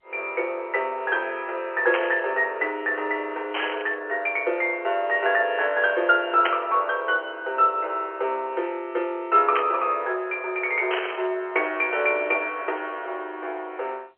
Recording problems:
phone line; 320 Hz to 3.2 kHz, G.711
static burst; 5 times, first at 2 s; peak +4 dB vs average level

